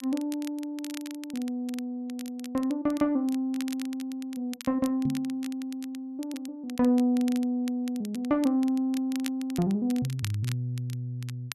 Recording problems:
crackle; vinyl, SNR 17 dB
knock on the microphone; at 5 s; peak +1 dB vs average level

